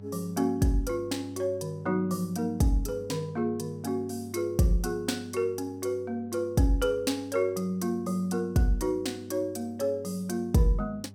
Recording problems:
hum; 50 Hz, harmonics up to 800 Hz, SNR 17 dB

